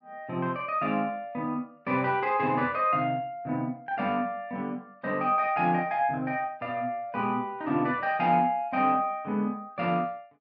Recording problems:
none

